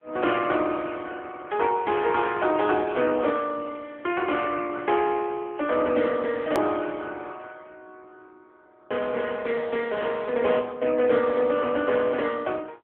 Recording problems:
phone line; 260 Hz to 3.4 kHz, AMR-NB
hard cut with a click; at 6.5 s

